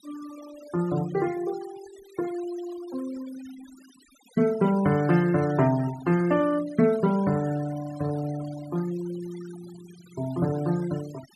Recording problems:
noise reduction artefacts; signal-to-artefact ratio 19 dB

